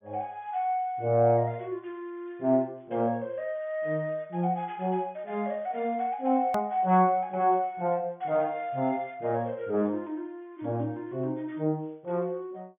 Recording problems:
treble missing; nothing above 3.5 kHz
edit click; at 6.5 s

